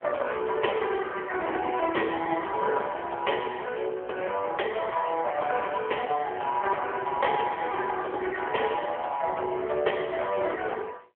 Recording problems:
phone line; 340 Hz to 3.2 kHz, AMR-NB
distorted audio; hard clipping, uneven, signal-to-distortion ratio 11 dB

